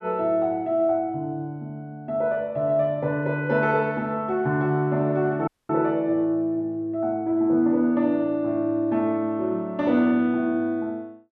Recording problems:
audio cutting out; at 5.5 s

